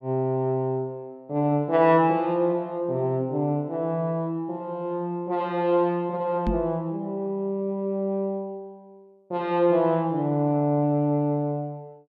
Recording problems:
knock on the microphone; at 6.5 s; peak +1 dB vs average level

